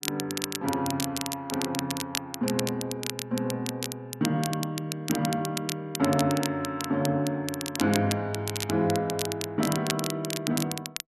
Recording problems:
crackling; vinyl, SNR 5 dB

